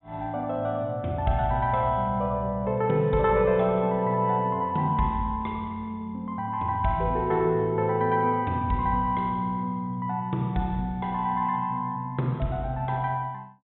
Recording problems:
treble cut off; nothing above 3.8 kHz

